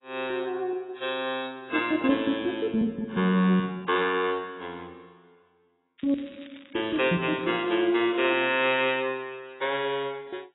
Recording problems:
codec artefacts; AAC, log-spectral distance 5 dB, nothing above 3.8 kHz
crackle; from 6 to 9 s; loose cable, SNR 24 dB

